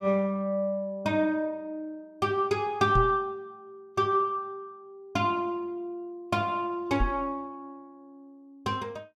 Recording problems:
microphone bump; at 3 s and at 7 s; peak +4 dB vs average level

